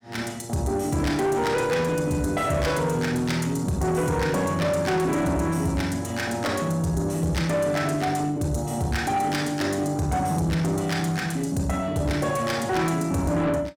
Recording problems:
distortion; soft clipping, signal-to-distortion ratio 11 dB

